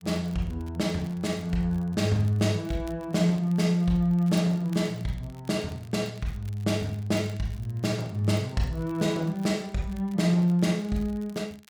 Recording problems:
crackling; vinyl, SNR 28 dB

